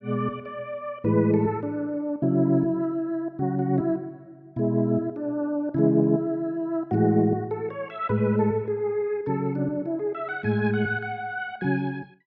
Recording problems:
none

